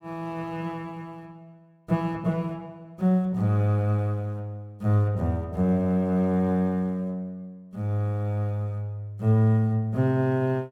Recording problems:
none

